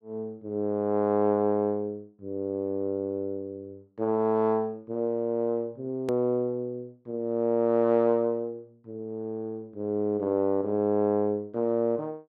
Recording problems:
click at an edit; at 6 s

